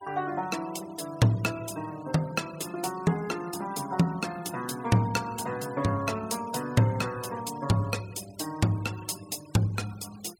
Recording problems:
noise reduction artefacts; signal-to-artefact ratio 18 dB

